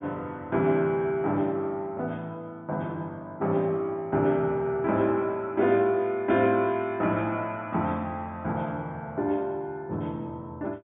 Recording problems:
low-pass filter; nothing above 3.6 kHz

